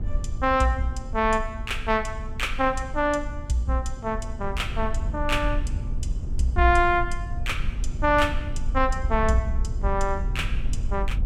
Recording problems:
hum; 60 Hz, harmonics up to 840 Hz, SNR 21 dB
rumble; below 66 Hz, SNR 6 dB

